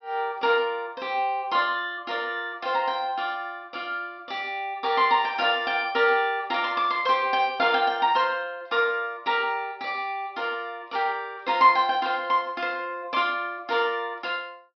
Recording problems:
treble missing; nothing above 5.5 kHz

